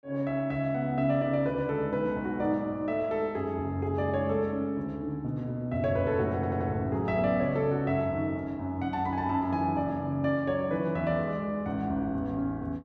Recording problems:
stutter; at 6.5 s

